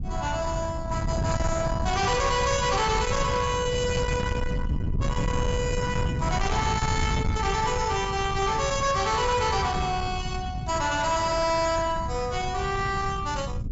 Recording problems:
treble cut off; nothing above 8 kHz
distorted audio; soft clipping, signal-to-distortion ratio 11 dB
wind on the microphone; below 190 Hz, SNR 4 dB

